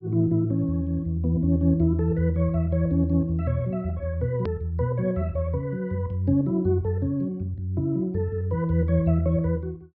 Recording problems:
low-pass filter; nothing above 5.5 kHz
hard cut with a click; at 4.5 s

